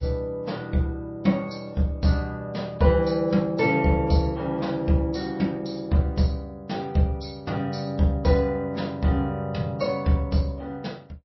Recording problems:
lossy codec; MP3, log-spectral distance 2 dB, nothing above 5.7 kHz

